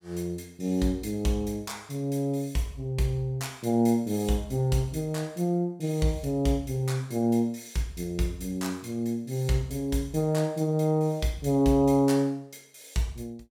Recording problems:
none

